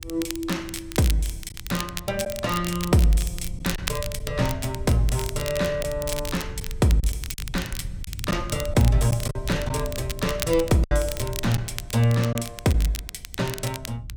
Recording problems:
low-frequency rumble; below 96 Hz, SNR 12 dB
crackle; vinyl, SNR 10 dB
packet loss; 3% of the sound replaced, filled with silence

